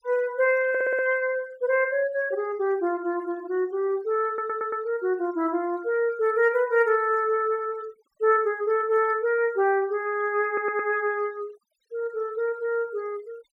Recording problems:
denoising artefacts; signal-to-artefact ratio 27 dB
audio stuttering; at 0.5 s, at 4.5 s and at 10 s

